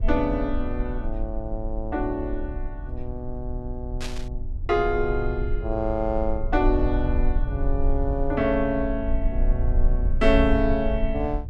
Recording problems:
rumble; below 54 Hz, strongest tone 24 Hz, SNR 3 dB
burst of static; at 4 s; peak -4 dB vs average level

